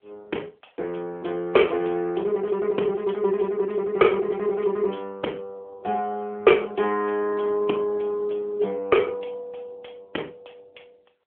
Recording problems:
phone line; 280 Hz to 3.4 kHz, AMR-NB

